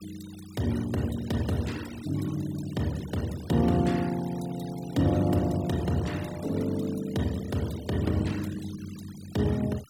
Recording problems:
noise reduction artefacts; signal-to-artefact ratio 18 dB

